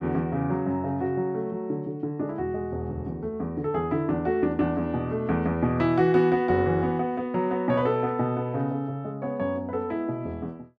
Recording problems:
none

